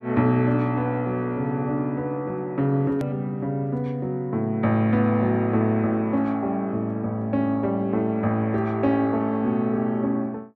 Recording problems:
edit click; at 3 s

